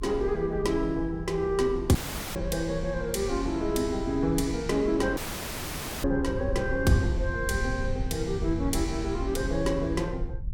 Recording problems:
low-frequency rumble; below 88 Hz, SNR 8 dB
audio cutting out; at 2 s and at 5 s for 1 s

